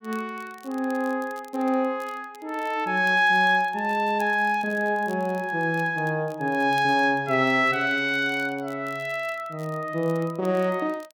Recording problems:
crackling; vinyl, SNR 28 dB

